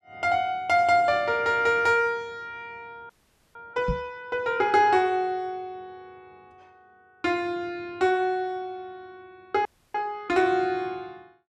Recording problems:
frozen audio; at 3 s and at 9.5 s
microphone thump; at 4 s; peak 0 dB vs average level

